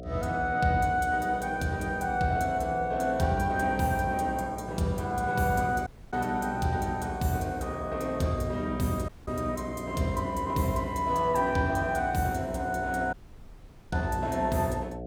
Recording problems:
hum; 60 Hz, harmonics up to 720 Hz, SNR 12 dB
audio cutting out; at 6 s, at 9 s and at 13 s for 1 s

